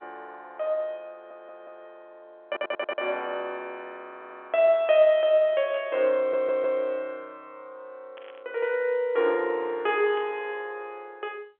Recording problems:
telephone audio; 300 Hz to 3.6 kHz, G.711
stutter; 4 times, first at 1 s
static burst; at 5.5 s, at 8 s and at 10 s; peak -17 dB vs average level

